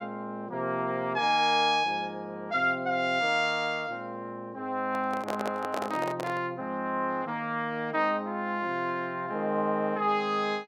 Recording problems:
microphone handling noise; from 5 to 6.5 s; peak 0 dB vs average level

